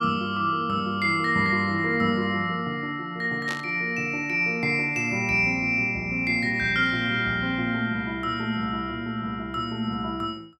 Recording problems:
burst of static; at 3.5 s; peak -6 dB vs average level

